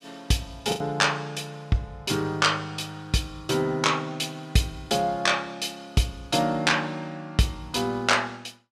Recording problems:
packet loss; 0.9% of the sound replaced, filled with the last packet

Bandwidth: 15.5 kHz